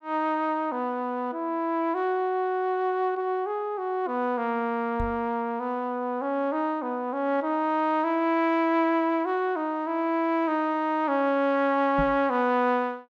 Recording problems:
microphone thump; at 5 s and at 12 s; peak -2 dB vs average level

